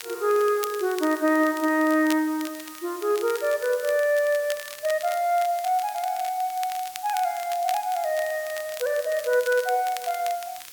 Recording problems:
hiss; slope +2 dB per octave, SNR 17 dB
crackling; vinyl, SNR 16 dB

